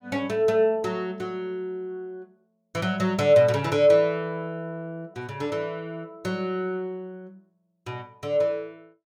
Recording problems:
none

